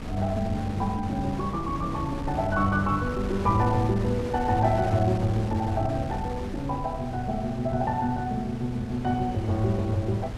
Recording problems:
wind on the microphone; below 290 Hz, SNR 8 dB

